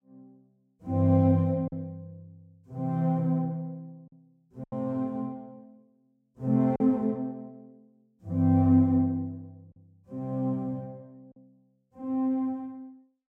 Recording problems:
lost packets; 1.9% of the sound replaced, filled with silence

